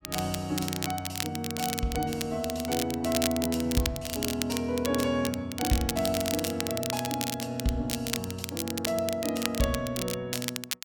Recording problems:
crackle; vinyl, SNR 4 dB

